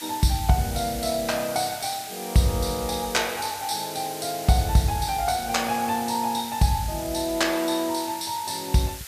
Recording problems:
hiss; slope +3 dB per octave, SNR 10 dB

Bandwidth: 14.5 kHz